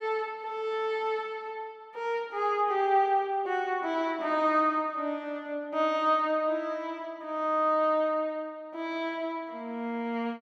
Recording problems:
none

